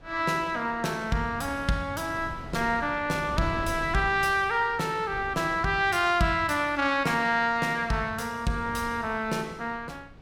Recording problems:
wind on the microphone; below 330 Hz, SNR 17 dB

